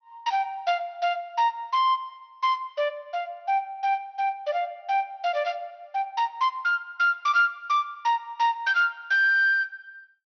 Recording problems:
low-pass filter; nothing above 6.1 kHz

